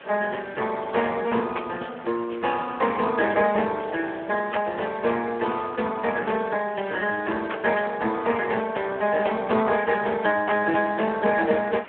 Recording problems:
telephone audio; 220 Hz to 2.8 kHz, Speex
hiss; SNR 21 dB

